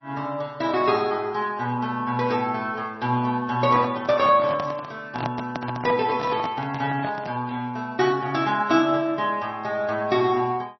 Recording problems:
lossy compression; MP3, log-spectral distance 2 dB, nothing above 5.7 kHz
handling noise; from 3.5 to 7.5 s; peak -2 dB vs average level

